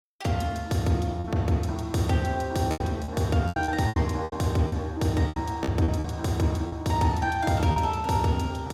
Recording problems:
packet loss; 9% of the sound replaced, filled with repeated pitch periods

